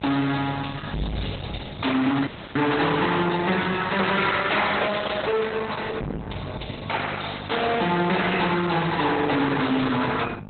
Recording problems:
codec artefacts; Opus, log-spectral distance 10 dB, nothing above 4 kHz
distorted audio; soft clipping, signal-to-distortion ratio 6 dB
electrical hum; 50 Hz, harmonics up to 900 Hz, SNR 15 dB
dropout; at 2.5 s

